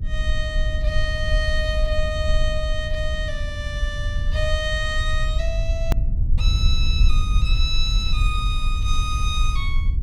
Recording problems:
electrical hum; 50 Hz, harmonics up to 300 Hz, SNR 17 dB
rumble; below 66 Hz, SNR -3 dB
hard cut with a click; at 6 s

